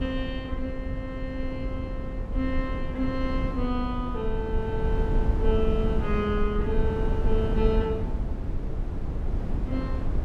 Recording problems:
wind noise; below 100 Hz, SNR -1 dB

